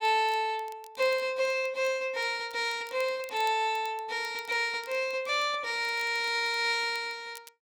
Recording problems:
crackling; vinyl, SNR 25 dB

